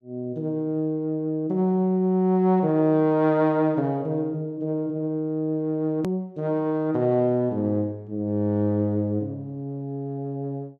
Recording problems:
click at an edit; at 6 s

